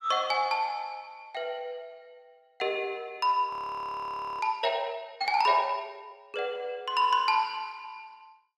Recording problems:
frozen audio; at 3.5 s for 1 s

